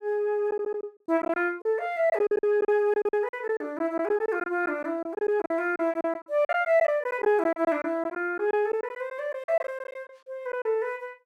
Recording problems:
lost packets; 13% of the sound replaced, filled with silence

